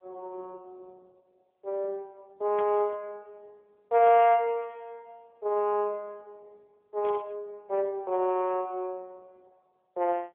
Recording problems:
phone line; 280 Hz to 3.3 kHz, AMR-NB
static burst; at 2.5 s, at 4 s and at 7 s; peak -11 dB vs average level

